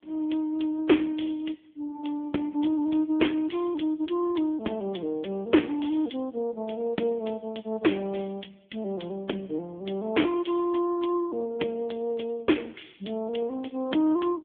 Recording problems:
phone line; 220 Hz to 3.5 kHz, AMR-NB

